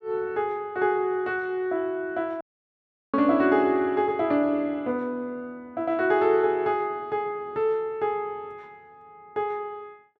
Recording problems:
audio cutting out; at 2.5 s for 0.5 s

